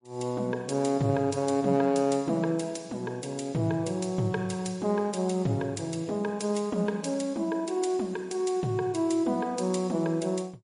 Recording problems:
codec artefacts; MP3, log-spectral distance 2 dB, nothing above 10.4 kHz

